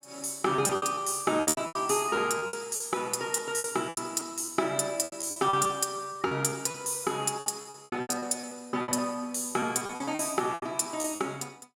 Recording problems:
lost packets; 16% of the sound replaced, filled with repeated pitch periods

